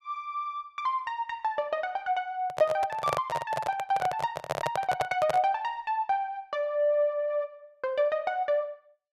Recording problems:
handling noise; from 2.5 to 5.5 s; peak +3 dB vs average level

